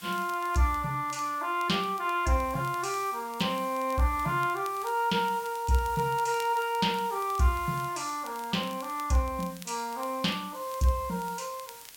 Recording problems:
hiss; slope +1 dB per octave, SNR 18 dB
crackling; vinyl, SNR 23 dB

